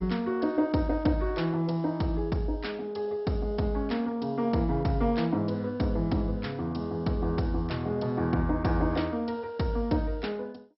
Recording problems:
lossy codec; MP2, log-spectral distance 2 dB, nothing above 5.5 kHz

